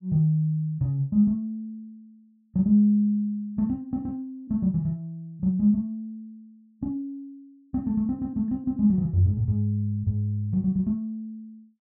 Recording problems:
none

